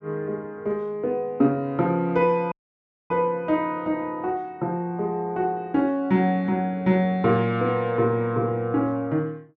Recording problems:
audio cutting out; at 2.5 s for 0.5 s

